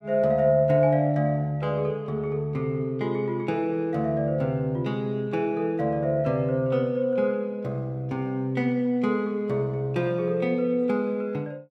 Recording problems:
none

